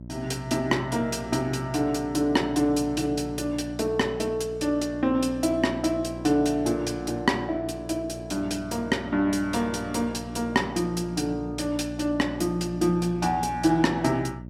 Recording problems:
hum; 60 Hz, harmonics up to 660 Hz, SNR 13 dB

